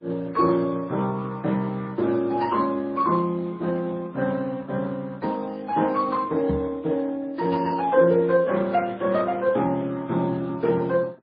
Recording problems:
lossy codec; Speex, then MP3, log-spectral distance 3 dB, nothing above 4.6 kHz
microphone thump; at 6.5 s; peak -2 dB vs average level

